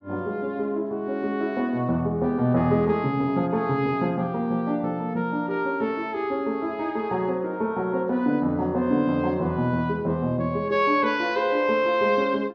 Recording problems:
treble missing; nothing above 6.6 kHz

